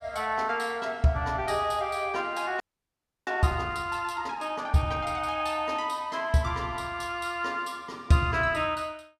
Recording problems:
audio freezing; at 2.5 s for 0.5 s

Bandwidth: 14.5 kHz